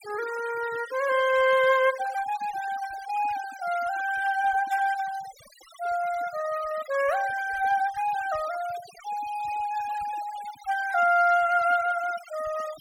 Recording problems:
noise reduction artefacts; signal-to-artefact ratio 17 dB

